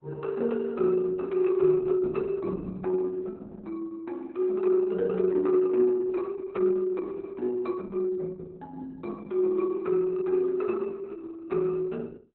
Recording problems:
lossy codec; Opus, log-spectral distance 2 dB, nothing above 4 kHz

